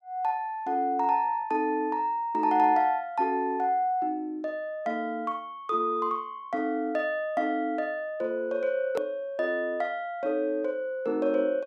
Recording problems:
hard cut with a click; at 9 s

